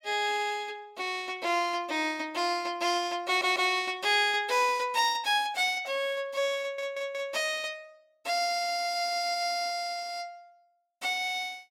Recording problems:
audio stuttering; at 3.5 s and at 6.5 s

